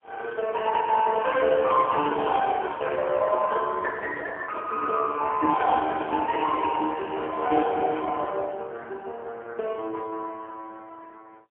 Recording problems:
phone line; 260 Hz to 2.8 kHz, AMR-NB, then MP3
microphone handling noise; from 3.5 to 5 s; peak -8 dB vs average level

